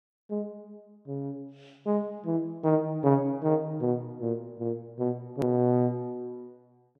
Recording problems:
hard cut with a click; at 5.5 s

